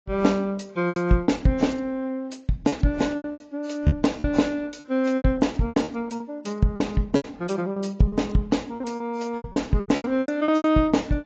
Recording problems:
codec artefacts; AAC, log-spectral distance 2 dB, nothing above 7.3 kHz
packet loss; 13% of the sound replaced, filled with repeated pitch periods

